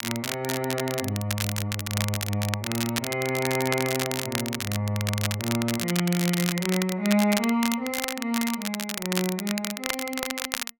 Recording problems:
crackle; vinyl, SNR 3 dB

